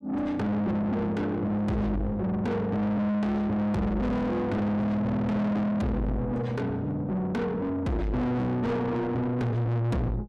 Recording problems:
distorted audio; soft clipping, signal-to-distortion ratio 6 dB

